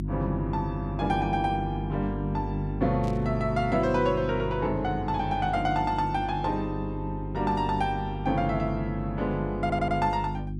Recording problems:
hum; 50 Hz, harmonics up to 350 Hz, SNR 5 dB
static burst; at 3 s; peak -15 dB vs average level
stutter; at 9.5 s

